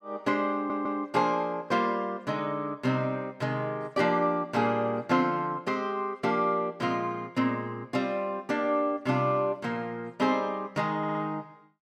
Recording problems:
stutter; at 0.5 s and at 11 s

